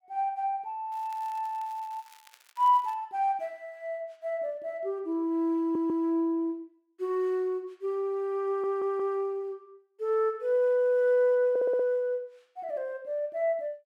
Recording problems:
crackling; from 1 to 3 s; loose cable, SNR 27 dB
stutter; at 5.5 s, at 8.5 s and at 12 s

